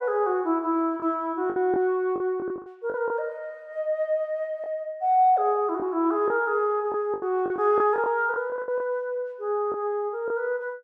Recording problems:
lost packets; 7% of the sound replaced, filled with the last packet

